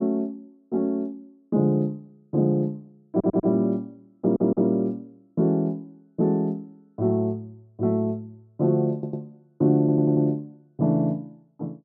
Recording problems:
audio stuttering; 4 times, first at 3 s

